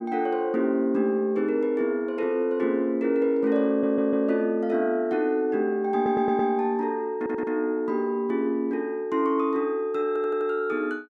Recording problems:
audio stuttering; 4 times, first at 3.5 s

